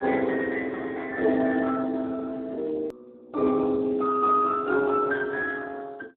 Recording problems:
phone line; 220 Hz to 3.8 kHz, Speex
click at an edit; at 3 s

